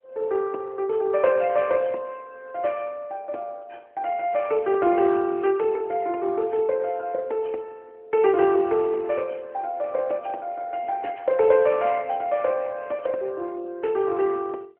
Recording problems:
telephone audio; 280 Hz to 3 kHz, AMR-NB

